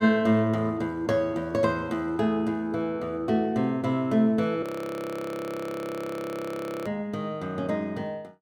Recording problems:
audio freezing; at 4.5 s for 2 s

